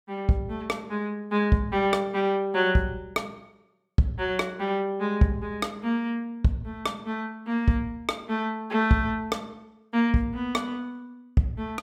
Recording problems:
none

